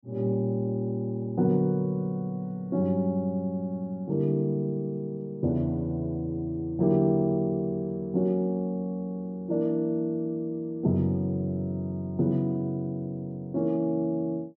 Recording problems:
none

